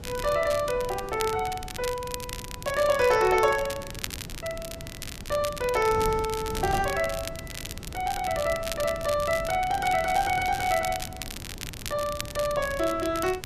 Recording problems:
wind noise; below 250 Hz, SNR 14 dB
crackle; vinyl, SNR 11 dB

